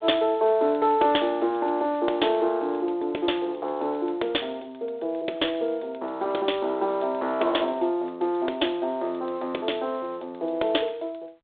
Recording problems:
telephone audio; 300 Hz to 3.6 kHz, G.726

